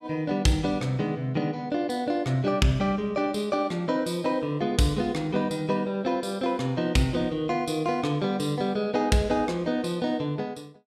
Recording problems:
none

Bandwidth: 14 kHz